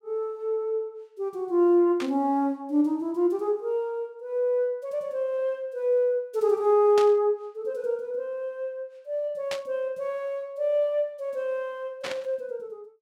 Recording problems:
burst of static; 4 times, first at 2 s; peak -3 dB vs average level

